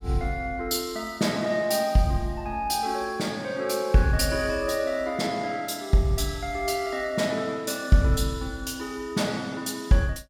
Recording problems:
none

